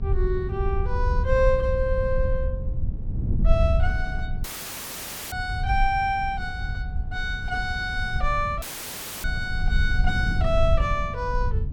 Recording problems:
electrical hum; 60 Hz, harmonics up to 900 Hz, SNR 20 dB
low-frequency rumble; below 68 Hz, SNR 2 dB
wind on the microphone; below 130 Hz, SNR 7 dB
audio cutting out; at 4.5 s for 1 s and at 8.5 s for 0.5 s; filled with static

